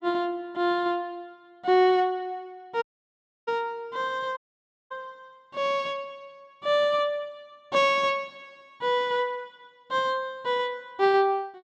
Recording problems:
dropout; at 3 s for 0.5 s and at 4.5 s for 0.5 s

